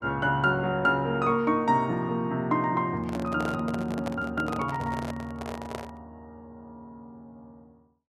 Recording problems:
microphone handling noise; from 3 to 6 s; peak -4 dB vs average level

